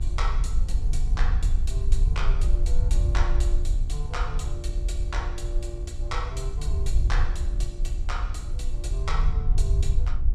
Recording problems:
electrical hum; 60 Hz, harmonics up to 1.6 kHz, SNR 12 dB
low-frequency rumble; below 54 Hz, SNR -9 dB

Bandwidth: 14.5 kHz